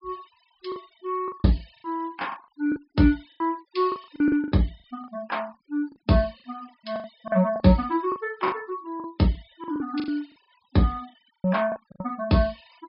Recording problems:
low-pass filter; nothing above 5.5 kHz
noise reduction artefacts; signal-to-artefact ratio 26 dB
lost packets; 12% of the sound replaced, filled with the last packet

